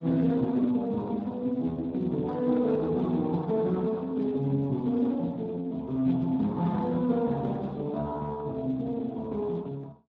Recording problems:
codec artefacts; Speex, log-spectral distance 2 dB

